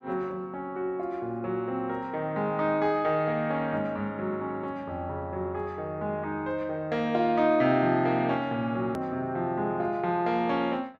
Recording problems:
hard cut with a click; at 9 s

